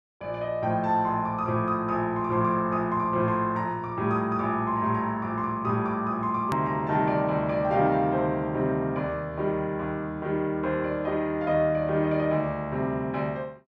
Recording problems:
edit click; at 6.5 s

